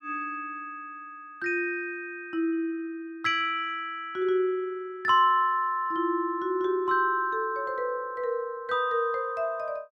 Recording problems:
none

